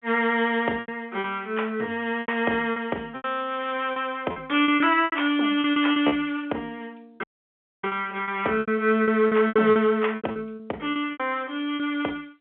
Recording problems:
phone line; 260 Hz to 3.4 kHz, G.711
packet loss; 12% of the sound replaced, filled with repeated pitch periods
audio cutting out; at 7 s for 0.5 s

